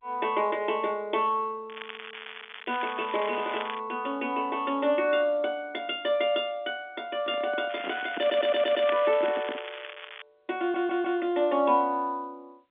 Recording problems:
phone line; 240 Hz to 3.5 kHz, G.711
crackle; from 1.5 to 4 s and from 7.5 to 10 s; loose cable, SNR 12 dB
handling noise; from 7 to 9.5 s; peak -5 dB vs average level
stutter; at 8 s and at 11 s

